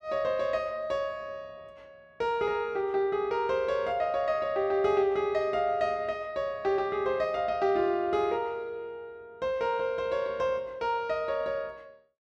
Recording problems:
none

